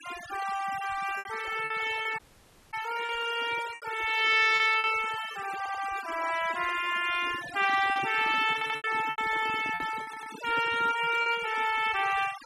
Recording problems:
noise reduction artefacts; signal-to-artefact ratio 14 dB
lost packets; 7% of the sound replaced, filled with repeated pitch periods
audio cutting out; at 2 s for 0.5 s
audio stuttering; at 5.5 s, at 8.5 s and at 10 s
microphone handling noise; from 7 to 11 s; peak -8 dB vs average level

